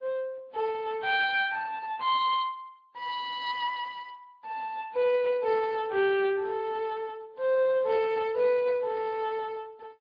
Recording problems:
codec artefacts; MP3, then Speex, log-spectral distance 3 dB

